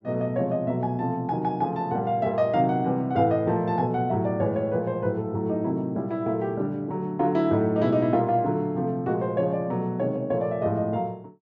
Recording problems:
low-pass filter; nothing above 8 kHz

